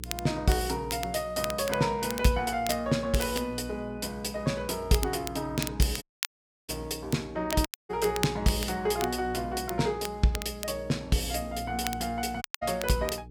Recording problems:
electrical hum; 60 Hz, harmonics up to 480 Hz, SNR 15 dB
crackle; vinyl, SNR 10 dB
dropout; at 6 s for 0.5 s, at 7.5 s and at 12 s

